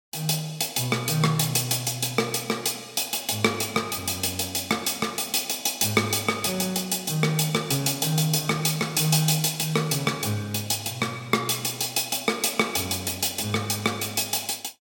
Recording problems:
none

